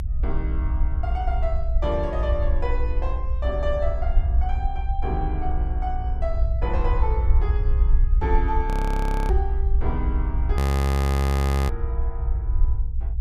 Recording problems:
rumble; below 68 Hz, SNR -6 dB
frozen audio; at 8.5 s for 0.5 s and at 11 s for 1 s

